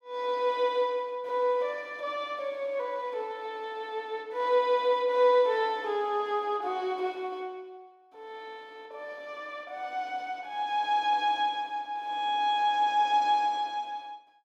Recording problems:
none

